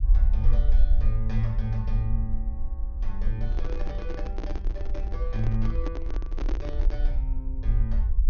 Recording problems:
treble missing; nothing above 6.5 kHz
rumble; below 48 Hz, strongest tone 22 Hz, SNR -6 dB
handling noise; from 3.5 to 7 s; peak +2 dB vs average level

